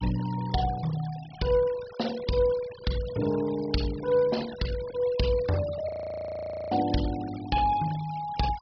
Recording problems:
treble missing; nothing above 5.5 kHz
denoising artefacts; signal-to-artefact ratio 16 dB
audio freezing; at 6 s for 1 s

